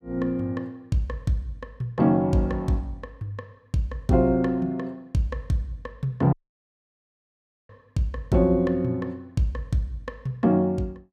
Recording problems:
dropout; at 6.5 s for 1.5 s

